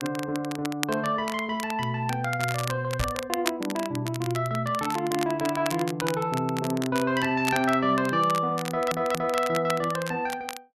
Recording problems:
crackling; vinyl, SNR 10 dB
knock on the microphone; at 3 s; peak -1 dB vs average level
audio stuttering; at 8.5 s

